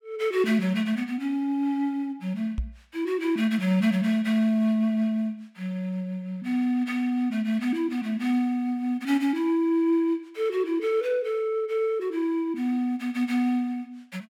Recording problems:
knock on the microphone; at 2.5 s; peak 0 dB vs average level

